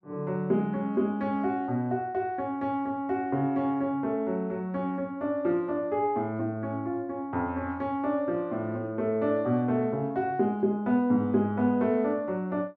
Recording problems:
none

